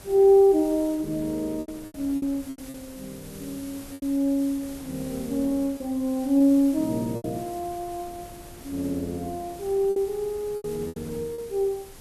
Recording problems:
codec artefacts; Vorbis, log-spectral distance 6 dB, nothing above 13.1 kHz
hiss; slope 0 dB per octave, SNR 21 dB
wind noise; below 510 Hz, SNR 22 dB
packet loss; 7% of the sound replaced, filled with repeated pitch periods

